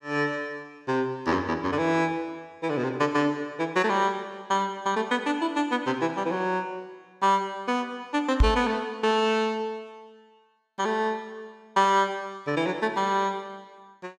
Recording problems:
microphone bump; at 8.5 s; peak +9 dB vs average level

